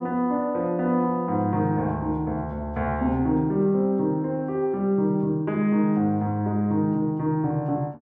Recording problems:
none

